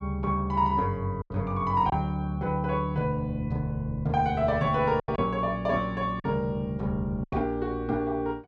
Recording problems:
packet loss; 4% of the sound replaced, filled with silence

